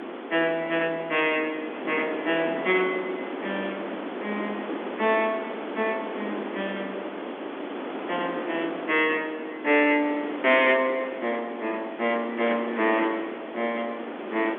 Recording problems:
telephone audio; 240 Hz to 3.5 kHz, G.711
distorted audio; soft clipping, signal-to-distortion ratio 14 dB
background hiss; SNR 8 dB

